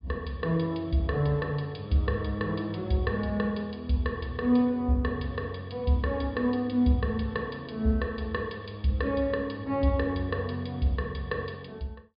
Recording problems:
low-pass filter; nothing above 4.9 kHz

